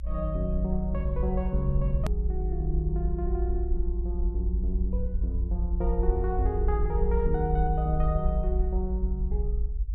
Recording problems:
rumble; below 56 Hz, strongest tone 56 Hz, SNR -2 dB
hard cut with a click; at 2 s

